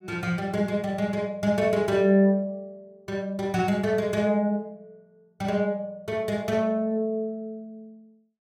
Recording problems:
none

